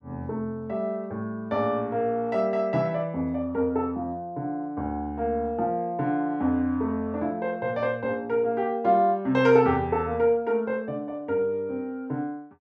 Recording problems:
none

